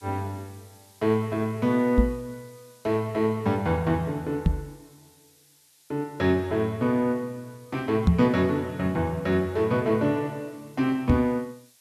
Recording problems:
hiss; SNR 29 dB
microphone bump; 4 times, first at 2 s; peak +9 dB vs average level

